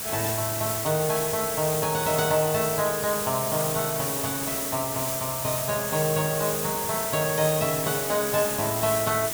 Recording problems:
hiss; slope -2 dB per octave, SNR 1 dB

